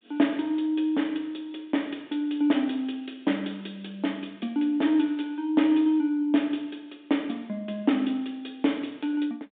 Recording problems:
telephone audio; 150 Hz to 3.6 kHz, G.726

